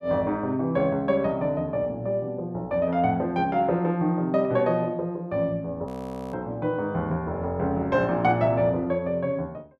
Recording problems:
frozen audio; at 6 s

